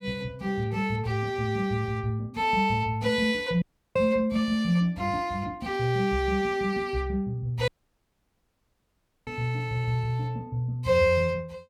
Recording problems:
dropout; at 3.5 s and at 7.5 s for 1.5 s

